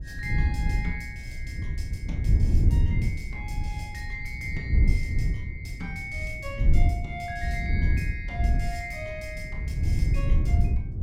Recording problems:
wind on the microphone; below 96 Hz, SNR -9 dB

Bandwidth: 17 kHz